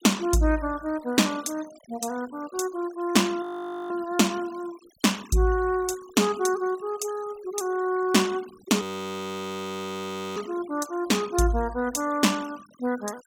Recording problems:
noise reduction artefacts; signal-to-artefact ratio 19 dB
frozen audio; at 3.5 s and at 9 s for 1.5 s

